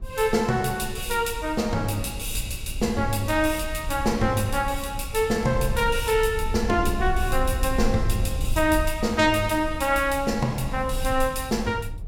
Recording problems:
low-frequency rumble; below 72 Hz, SNR 9 dB

